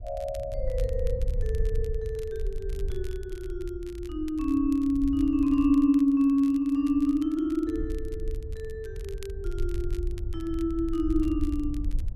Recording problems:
wind noise; below 68 Hz, SNR 8 dB
crackle; vinyl, SNR 27 dB

